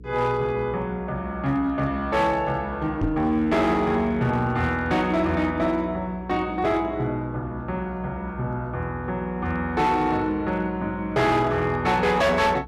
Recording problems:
distortion; hard clipping, signal-to-distortion ratio 11 dB
hum; 60 Hz, harmonics up to 480 Hz, SNR 18 dB
microphone thump; at 3 s; peak +2 dB vs average level

